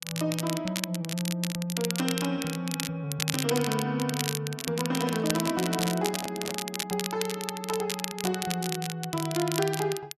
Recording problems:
crackle; vinyl, SNR 3 dB
microphone handling noise; from 5 to 6.5 s; peak -3 dB vs average level

